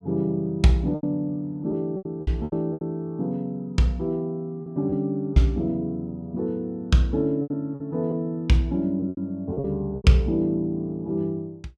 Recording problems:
packet loss; 8% of the sound replaced, filled with repeated pitch periods

